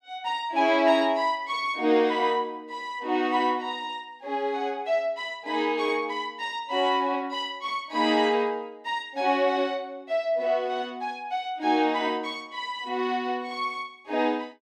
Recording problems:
none

